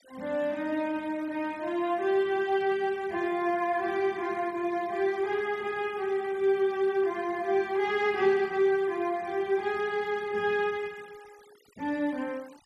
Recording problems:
noise reduction artefacts; signal-to-artefact ratio 25 dB

